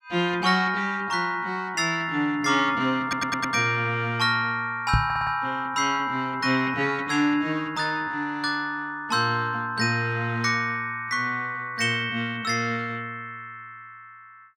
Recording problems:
stutter; at 3 s and at 5 s
microphone bump; at 5 s; peak +5 dB vs average level

